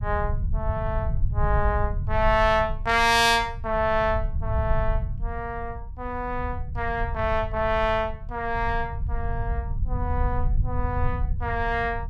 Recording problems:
rumble; below 84 Hz, SNR 5 dB

